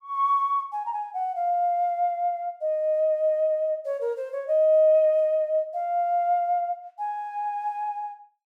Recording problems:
none

